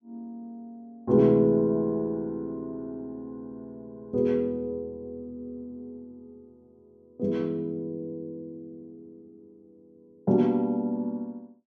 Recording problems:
none

